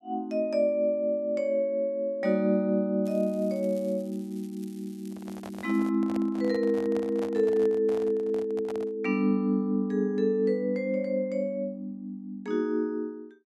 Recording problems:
crackling; from 3 to 6 s; loose cable, SNR 28 dB
microphone handling noise; from 5 to 9 s; peak -9 dB vs average level

